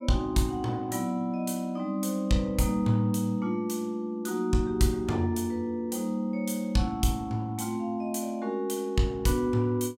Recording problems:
none

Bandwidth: 16.5 kHz